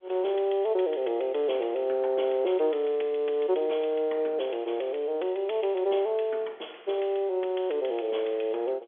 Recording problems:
telephone audio; 320 Hz to 3.5 kHz, G.711

